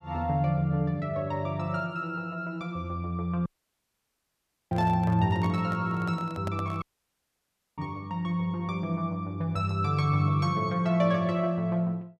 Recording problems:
audio cutting out; at 3.5 s for 1.5 s and at 7 s for 1 s
handling noise; from 4.5 to 7 s; peak -5 dB vs average level

